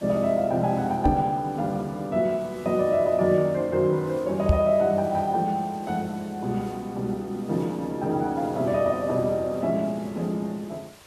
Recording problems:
background hiss; slope -2 dB per octave, SNR 25 dB
microphone bump; at 1 s and at 4.5 s; peak +8 dB vs average level

